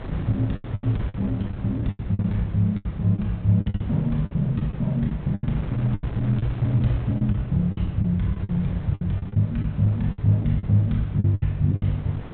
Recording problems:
treble cut off; nothing above 4 kHz
wind on the microphone; below 360 Hz, SNR 14 dB
lost packets; 14% of the sound replaced, filled with the last packet

